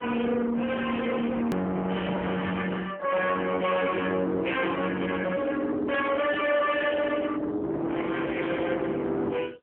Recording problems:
phone line; 500 Hz to 2.1 kHz, AMR-NB
distorted audio; soft clipping, signal-to-distortion ratio 7 dB
hard cut with a click; at 1.5 s

